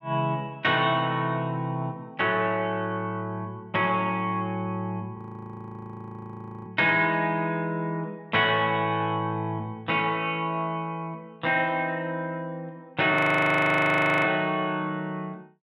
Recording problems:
audio freezing; at 5 s for 1.5 s and at 13 s for 1 s

